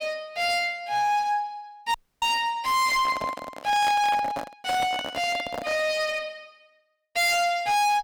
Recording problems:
distortion; hard clipping, uneven, signal-to-distortion ratio 5 dB
audio cutting out; at 2 s
handling noise; from 3 to 6 s; peak -1 dB vs average level

